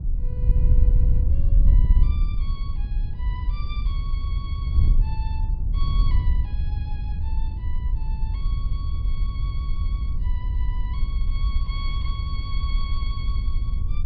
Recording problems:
low-pass filter; nothing above 5.5 kHz
wind noise; below 66 Hz, SNR -17 dB

